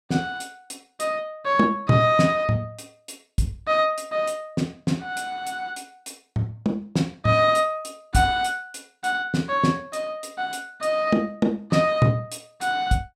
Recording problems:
none

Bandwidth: 16 kHz